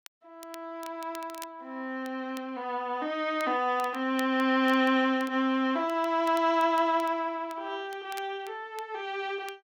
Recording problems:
crackling; vinyl, SNR 22 dB

